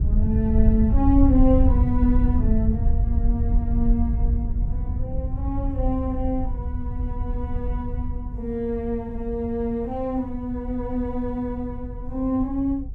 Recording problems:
wind on the microphone; below 78 Hz, SNR 0 dB

